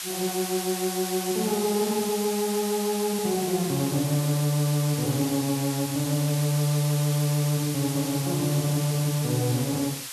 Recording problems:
hiss; slope +4 dB per octave, SNR 7 dB

